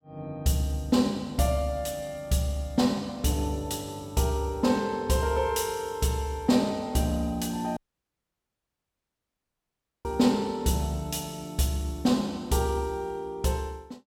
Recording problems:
audio cutting out; at 8 s for 2.5 s

